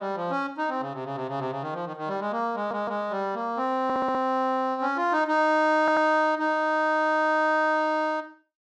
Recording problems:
stutter; at 2.5 s, at 4 s and at 6 s

